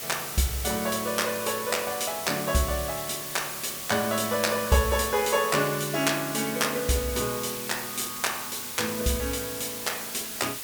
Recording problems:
hiss; slope +1 dB per octave, SNR 6 dB

